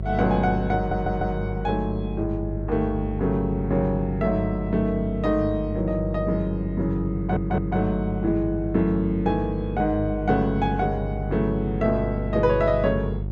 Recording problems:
electrical hum; 50 Hz, harmonics up to 550 Hz, SNR 6 dB
audio stuttering; at 1 s and at 7 s

